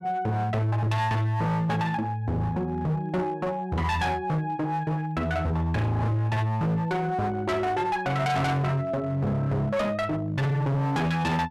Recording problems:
distorted audio; hard clipping, uneven, signal-to-distortion ratio 7 dB

